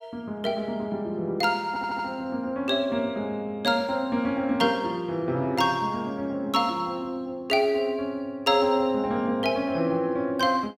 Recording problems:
audio stuttering; at 1.5 s

